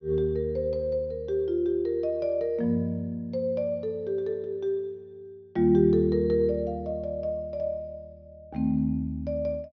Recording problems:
treble cut off; nothing above 6.4 kHz

